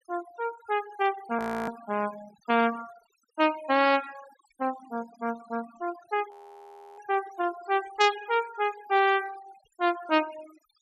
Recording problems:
denoising artefacts; signal-to-artefact ratio 18 dB
audio freezing; at 1.5 s and at 6.5 s for 0.5 s

